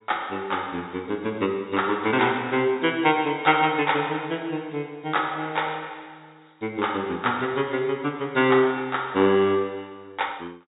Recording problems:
treble missing; nothing above 4 kHz

